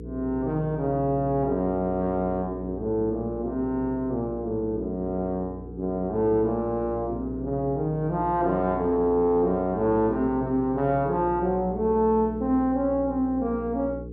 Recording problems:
electrical hum; 60 Hz, harmonics up to 480 Hz, SNR 13 dB

